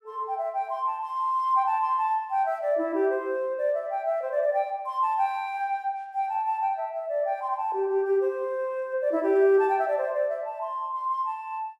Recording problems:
none

